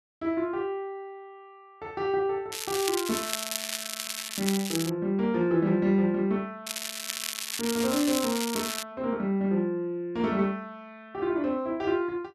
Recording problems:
crackle; from 2.5 to 5 s and from 6.5 to 9 s; loose cable, SNR 4 dB

